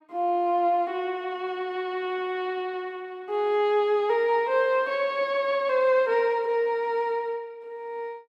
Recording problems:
none

